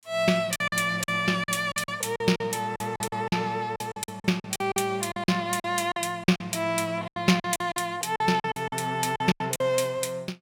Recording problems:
lost packets; 15% of the sound replaced, filled with silence

